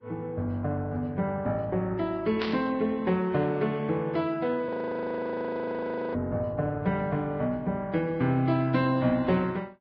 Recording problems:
codec artefacts; Vorbis, log-spectral distance 2 dB
static burst; at 2.5 s; peak -1 dB vs average level
audio freezing; at 4.5 s for 1.5 s

